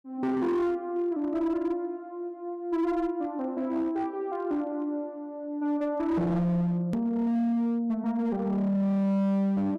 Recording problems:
distortion; hard clipping, signal-to-distortion ratio 10 dB
click at an edit; at 7 s

